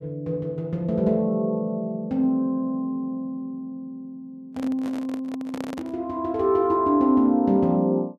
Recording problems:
microphone handling noise; from 4.5 to 6 s; peak -7 dB vs average level

